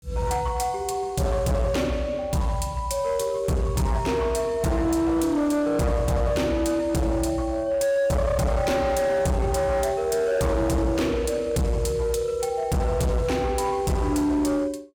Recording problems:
distortion; hard clipping, signal-to-distortion ratio 8 dB

